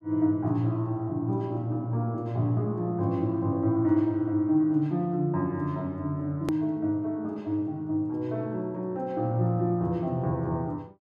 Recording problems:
click at an edit; at 6.5 s

